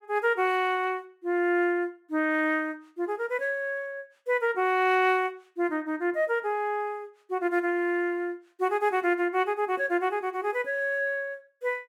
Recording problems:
none

